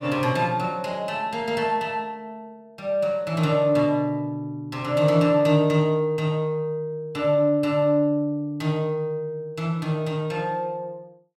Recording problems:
none

